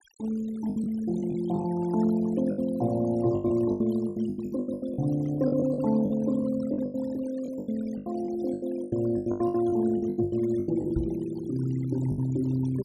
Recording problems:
noise reduction artefacts; signal-to-artefact ratio 19 dB
packet loss; 16% of the sound replaced, filled with the last packet
knock on the microphone; at 11 s; peak +2 dB vs average level

